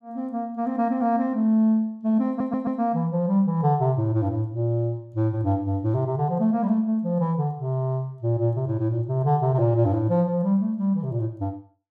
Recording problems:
audio stuttering; at 2.5 s

